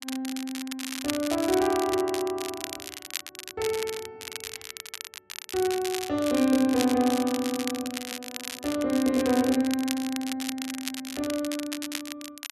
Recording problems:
crackle; vinyl, SNR 8 dB

